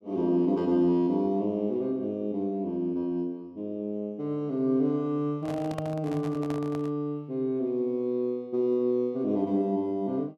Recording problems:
handling noise; from 5.5 to 7 s; peak -4 dB vs average level

